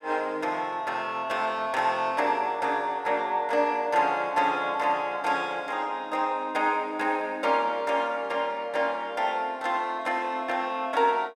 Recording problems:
none

